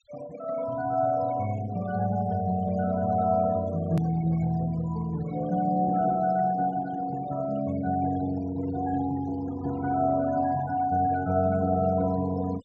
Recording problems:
treble cut off; nothing above 8 kHz
denoising artefacts; signal-to-artefact ratio 17 dB
click at an edit; at 4 s

